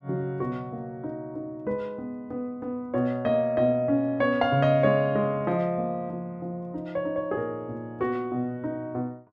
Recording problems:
none

